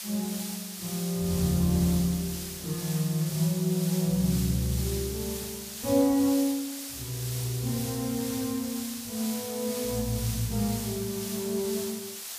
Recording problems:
hiss; slope +3 dB per octave, SNR 7 dB

